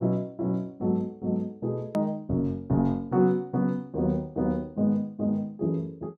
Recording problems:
click at an edit; at 2 s

